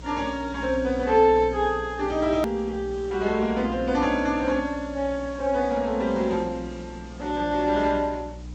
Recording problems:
treble missing; nothing above 8 kHz
codec artefacts; Vorbis, log-spectral distance 3 dB
hum; 60 Hz, harmonics up to 300 Hz, SNR 16 dB
hiss; slope -4 dB per octave, SNR 25 dB
click at an edit; at 2.5 s

